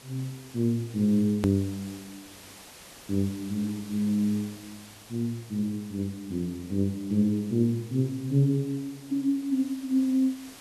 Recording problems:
hiss; slope -2 dB per octave, SNR 20 dB
edit click; at 1.5 s

